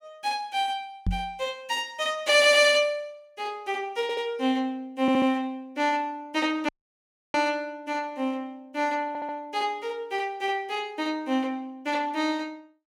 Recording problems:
microphone bump; at 1 s; peak +2 dB vs average level
audio stuttering; 4 times, first at 2.5 s
dropout; at 6.5 s for 0.5 s

